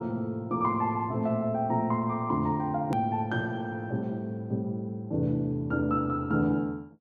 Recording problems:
click at an edit; at 3 s

